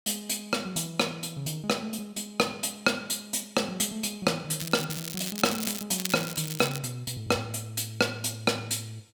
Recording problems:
crackling; from 4.5 to 6 s and at 6 s; loose cable, SNR 6 dB

